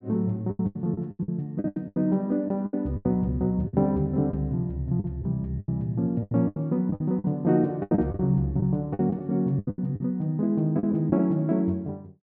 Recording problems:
lost packets; 14% of the sound replaced, filled with the last packet

